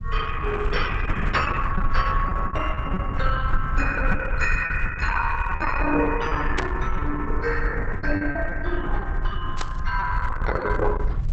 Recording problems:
codec artefacts; Opus, log-spectral distance 4 dB, nothing above 6.7 kHz
rumble; below 62 Hz, SNR 3 dB
packet loss; 6% of the sound replaced, filled with repeated pitch periods
static burst; at 6.5 s and at 9.5 s; peak +2 dB vs average level

